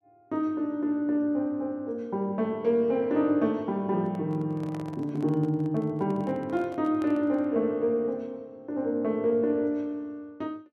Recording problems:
microphone handling noise; from 4 to 7.5 s; peak -10 dB vs average level

